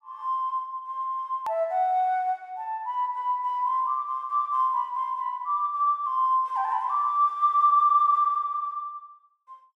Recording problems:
click at an edit; at 1.5 s

